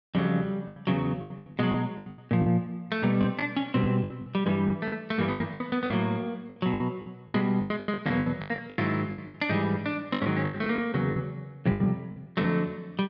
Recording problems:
lost packets; 17% of the sound replaced, filled with the last packet

